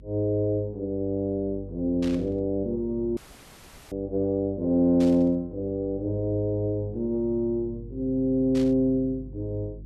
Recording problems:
hum; 50 Hz, harmonics up to 350 Hz, SNR 18 dB
burst of static; at 2 s, at 5 s and at 8.5 s; peak -10 dB vs average level
audio cutting out; at 3 s for 1 s

